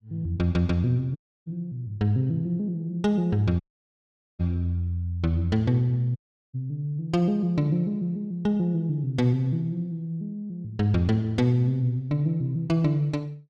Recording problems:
audio cutting out; at 1 s, at 3.5 s for 1 s and at 6 s

